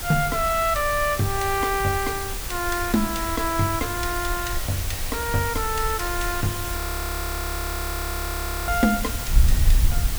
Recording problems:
hiss; slope -1 dB per octave, SNR 5 dB
wind on the microphone; below 68 Hz, SNR 5 dB
frozen audio; at 7 s for 2 s

